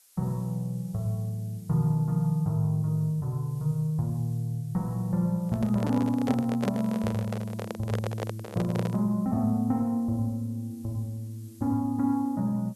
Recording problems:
hiss; slope +3 dB per octave, SNR 27 dB
handling noise; from 5.5 to 9 s; peak 0 dB vs average level

